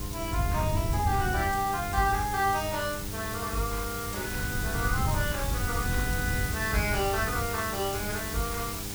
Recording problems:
hum; 50 Hz, harmonics up to 1.4 kHz, SNR 10 dB
background hiss; slope +1 dB per octave, SNR 6 dB
wind noise; below 130 Hz, SNR 4 dB

